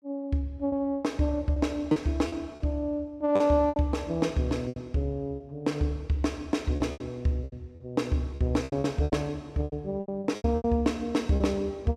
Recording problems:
packet loss; 11% of the sound replaced, filled with repeated pitch periods

